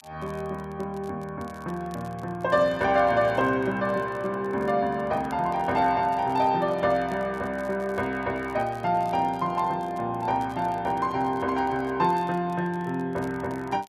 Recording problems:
crackle; vinyl, SNR 29 dB

